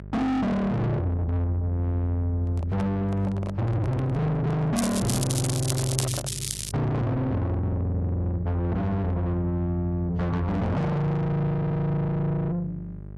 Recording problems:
codec artefacts; AAC, log-spectral distance 2 dB, nothing above 11.3 kHz
distortion; soft clipping, signal-to-distortion ratio 6 dB
hum; 50 Hz, harmonics up to 600 Hz, SNR 15 dB
handling noise; from 2.5 to 6.5 s; peak -3 dB vs average level
crackling; from 5 to 6.5 s; loose cable, SNR 5 dB
audio stuttering; at 12 s

